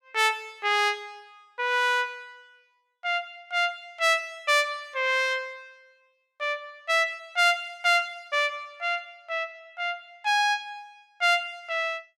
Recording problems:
none

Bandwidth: 16.5 kHz